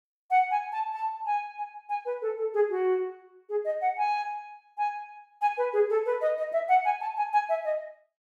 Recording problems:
none

